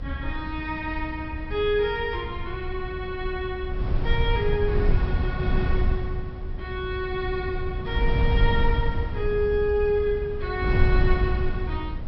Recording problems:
treble missing; nothing above 5.6 kHz
rumble; below 80 Hz, SNR 10 dB
wind noise; below 96 Hz, SNR 1 dB

